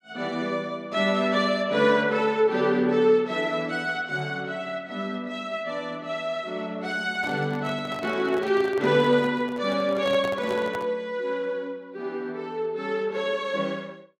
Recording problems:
microphone handling noise; from 7 to 11 s; peak -6 dB vs average level

